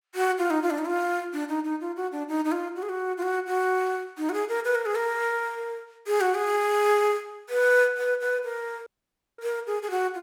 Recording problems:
audio cutting out; at 9 s for 0.5 s

